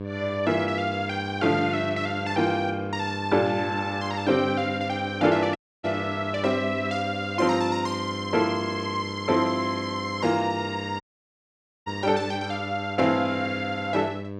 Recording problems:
electrical hum; 50 Hz, harmonics up to 1.2 kHz, SNR 9 dB
dropout; at 5.5 s and at 11 s for 1 s

